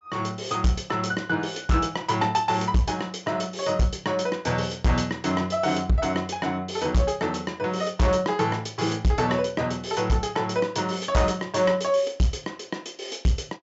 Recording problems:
treble cut off; nothing above 8 kHz
distorted audio; hard clipping, signal-to-distortion ratio 11 dB

